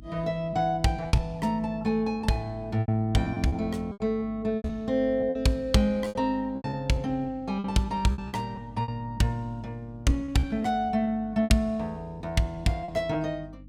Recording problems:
hum; 50 Hz, harmonics up to 300 Hz, SNR 19 dB
lost packets; 9% of the sound replaced, filled with repeated pitch periods

